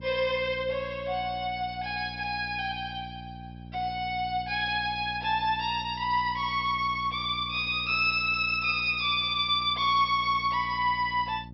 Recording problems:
treble missing; nothing above 5.6 kHz
hum; 60 Hz, harmonics up to 600 Hz, SNR 17 dB

